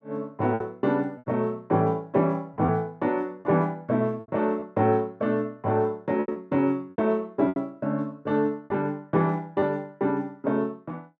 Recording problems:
packet loss; 5% of the sound replaced, filled with repeated pitch periods

